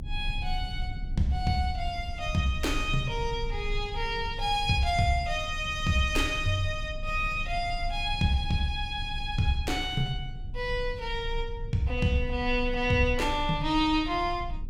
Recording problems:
low-frequency rumble; below 60 Hz, strongest tone 26 Hz, SNR 9 dB

